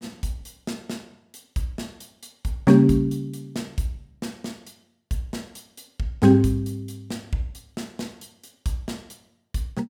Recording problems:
none

